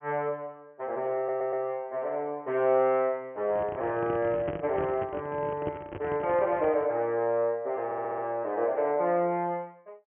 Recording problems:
low-pass filter; nothing above 3.2 kHz
stutter; at 1 s and at 8 s
microphone handling noise; from 3.5 to 7 s; peak -2 dB vs average level

